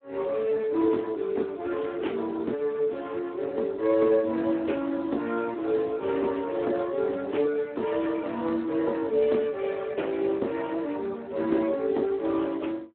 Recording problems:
telephone audio; 240 Hz to 3.5 kHz, Speex

